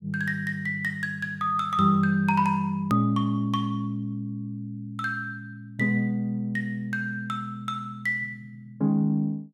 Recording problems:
click at an edit; at 3 s

